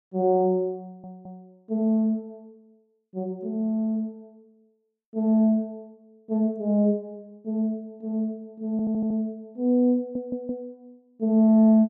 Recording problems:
audio stuttering; at 1 s, at 8.5 s and at 10 s

